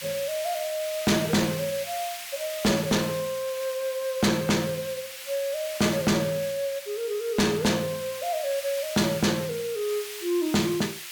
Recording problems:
distorted audio; soft clipping, signal-to-distortion ratio 6 dB
hiss; SNR 10 dB

